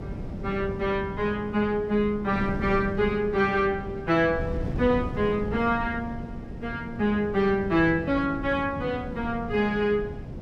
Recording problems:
wind on the microphone; below 250 Hz, SNR 10 dB

